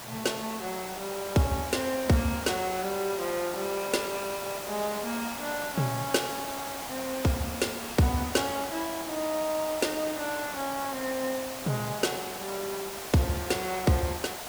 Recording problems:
hiss; SNR 6 dB

